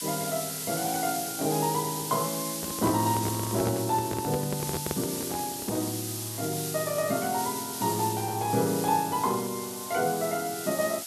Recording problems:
background hiss; SNR 4 dB
handling noise; from 2.5 to 6 s; peak +1 dB vs average level

